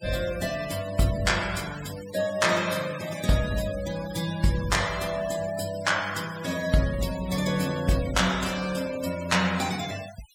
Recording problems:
denoising artefacts; signal-to-artefact ratio 13 dB

